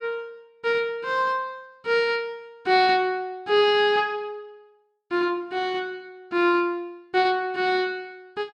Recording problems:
none

